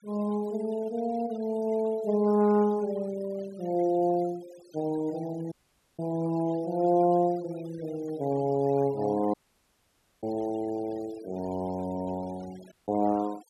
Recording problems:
noise reduction artefacts; signal-to-artefact ratio 22 dB
dropout; at 5.5 s, at 9.5 s for 1 s and at 13 s

